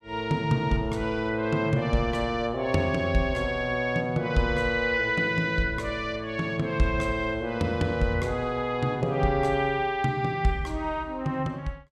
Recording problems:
none

